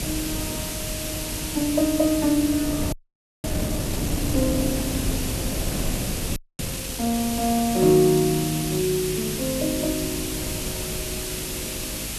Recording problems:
hum; 50 Hz, harmonics up to 450 Hz, SNR 16 dB
background hiss; slope +2 dB per octave, SNR 6 dB
wind on the microphone; below 300 Hz, SNR 9 dB
frozen audio; at 3 s for 0.5 s and at 6.5 s

